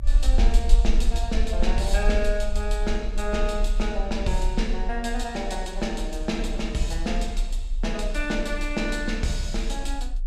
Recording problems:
low-frequency rumble; below 44 Hz, strongest tone 30 Hz, SNR 0 dB

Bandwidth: 14.5 kHz